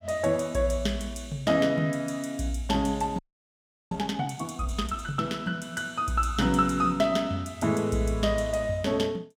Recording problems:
frozen audio; at 3 s for 0.5 s

